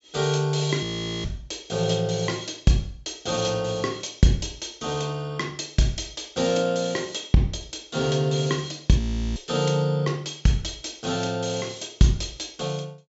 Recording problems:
treble missing; nothing above 8 kHz
audio freezing; at 1 s and at 9 s

